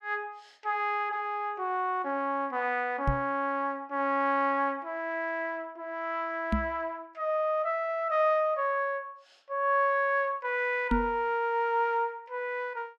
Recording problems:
microphone bump; at 3 s, at 6.5 s and at 11 s; peak +4 dB vs average level

